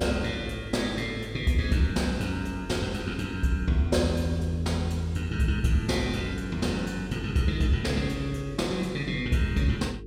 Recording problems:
electrical hum; 50 Hz, harmonics up to 450 Hz, SNR 14 dB

